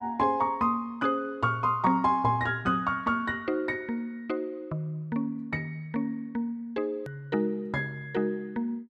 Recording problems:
click at an edit; at 7 s

